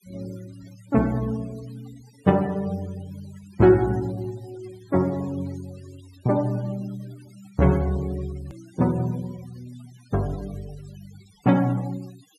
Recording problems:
denoising artefacts; signal-to-artefact ratio 24 dB
click at an edit; at 8.5 s

